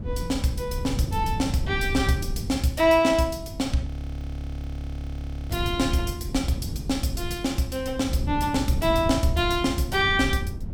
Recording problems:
wind on the microphone; below 140 Hz, SNR 8 dB
audio freezing; at 4 s for 1.5 s

